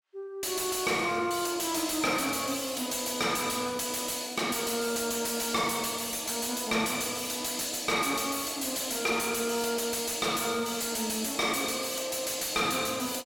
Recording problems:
distorted audio; soft clipping, signal-to-distortion ratio 7 dB

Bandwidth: 17 kHz